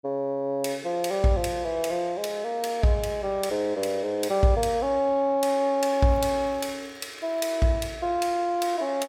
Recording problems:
crackling; from 6 to 7.5 s; loose cable, SNR 29 dB

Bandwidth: 16.5 kHz